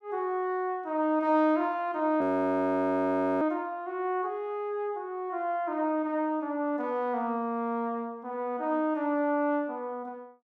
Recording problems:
audio freezing; at 2 s for 1 s

